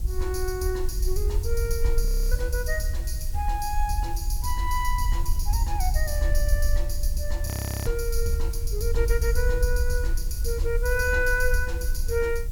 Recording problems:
hiss; SNR 18 dB
wind on the microphone; below 54 Hz, SNR -1 dB
audio freezing; at 2 s and at 7.5 s

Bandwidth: 17.5 kHz